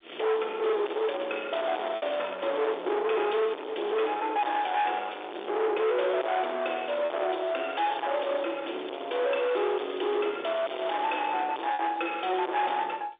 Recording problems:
phone line; 340 Hz to 3.6 kHz, G.711
distorted audio; soft clipping, signal-to-distortion ratio 5 dB
lost packets; 1.7% of the sound replaced, filled with repeated pitch periods

